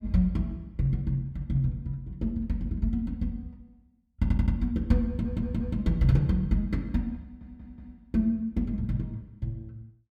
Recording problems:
audio stuttering; at 4 s, at 5 s and at 7 s

